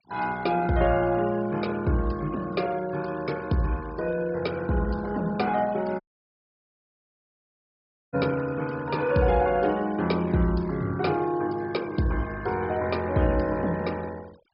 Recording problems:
low-pass filter; nothing above 5.5 kHz
noise reduction artefacts; signal-to-artefact ratio 20 dB
audio cutting out; at 6 s for 2 s

